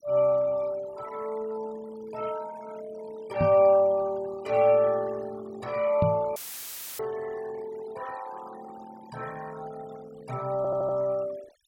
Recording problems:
noise reduction artefacts; signal-to-artefact ratio 20 dB
knock on the microphone; at 3.5 s and at 6 s; peak +3 dB vs average level
dropout; at 6.5 s for 0.5 s; filled with static
stutter; at 11 s

